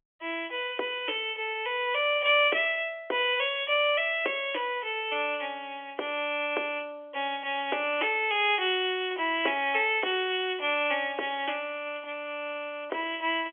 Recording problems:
telephone audio; 300 Hz to 3.4 kHz, G.711

